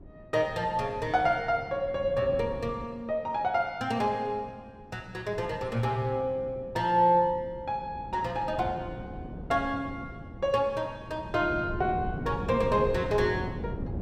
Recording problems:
wind on the microphone; below 280 Hz, SNR 11 dB

